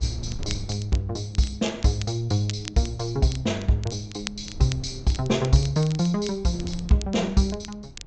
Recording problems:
low-pass filter; nothing above 8 kHz
wind noise; below 130 Hz, SNR 17 dB
crackling; vinyl, SNR 16 dB

